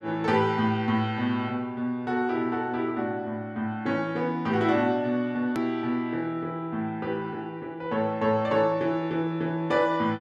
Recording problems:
hard cut with a click; at 5.5 s

